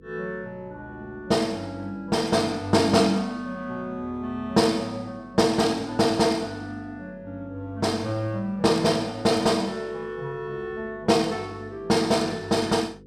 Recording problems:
electrical hum; 50 Hz, harmonics up to 500 Hz, SNR 25 dB

